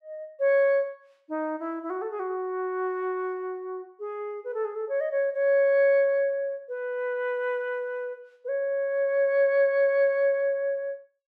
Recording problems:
none

